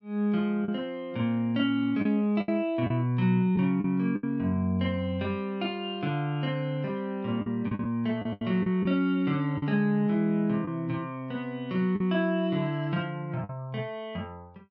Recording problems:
packet loss; 5% of the sound replaced, filled with the last packet

